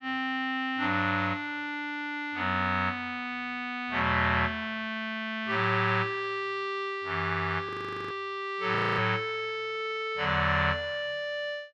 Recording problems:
frozen audio; at 7.5 s and at 9 s

